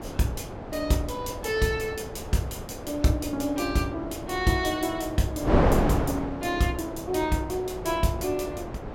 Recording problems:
wind noise; below 630 Hz, SNR 4 dB

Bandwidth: 16.5 kHz